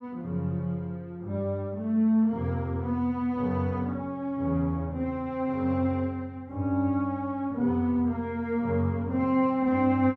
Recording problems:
none

